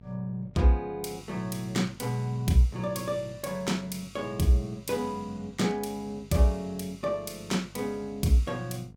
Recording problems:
electrical hum; 50 Hz, harmonics up to 750 Hz, SNR 22 dB

